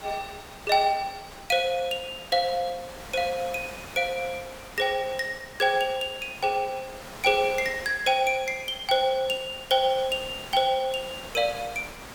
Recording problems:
background hiss; SNR 16 dB

